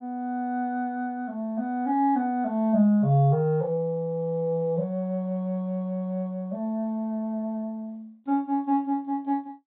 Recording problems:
treble cut off; nothing above 4 kHz

